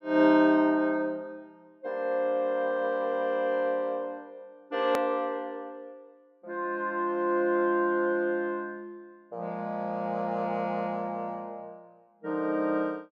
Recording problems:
hard cut with a click; at 5 s

